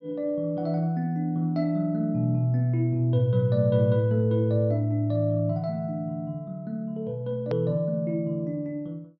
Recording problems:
treble missing; nothing above 5.8 kHz
hard cut with a click; at 7.5 s

